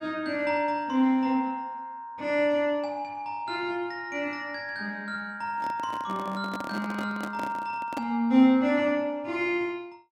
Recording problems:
microphone handling noise; from 5.5 to 8 s; peak -3 dB vs average level

